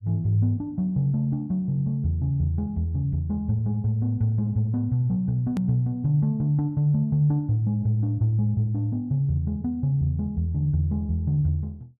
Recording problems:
hard cut with a click; at 5.5 s

